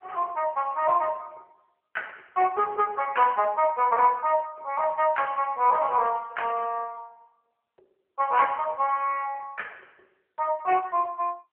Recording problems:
phone line; 370 Hz to 3 kHz, AMR-NB

